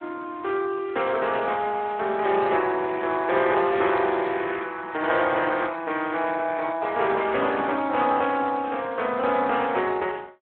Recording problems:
telephone audio; 280 Hz to 3.3 kHz, Speex

